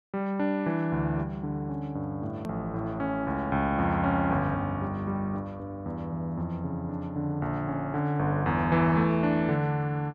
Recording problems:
click at an edit; at 2.5 s

